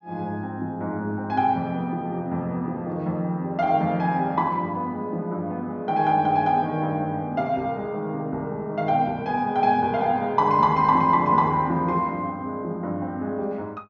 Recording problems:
low-pass filter; nothing above 6.9 kHz

